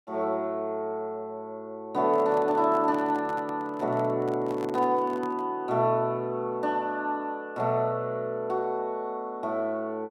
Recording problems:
microphone handling noise; from 2 to 5.5 s; peak -9 dB vs average level

